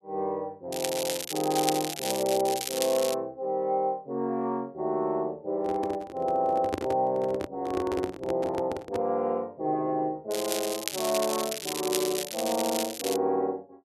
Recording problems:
crackling; from 0.5 to 3 s and from 10 to 13 s; loose cable, SNR 4 dB
handling noise; from 5.5 to 9 s; peak +3 dB vs average level

